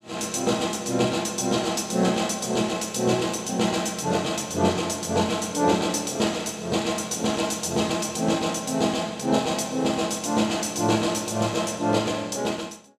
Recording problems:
none

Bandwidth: 14.5 kHz